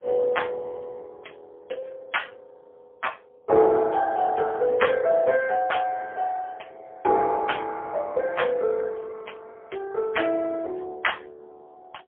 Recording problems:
phone line; 340 Hz to 2.9 kHz, AMR-NB, then MP3

